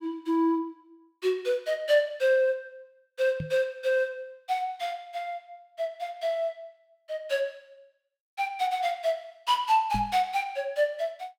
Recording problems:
microphone bump; at 3.5 s and at 10 s; peak -2 dB vs average level

